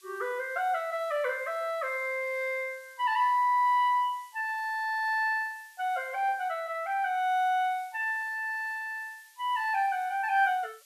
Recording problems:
hiss; slope +6 dB per octave, SNR 27 dB

